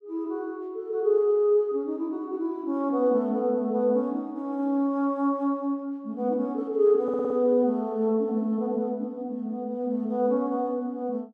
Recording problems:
stutter; at 7 s

